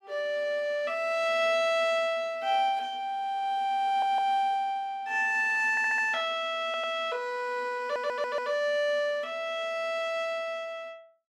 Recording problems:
stutter; 4 times, first at 4 s

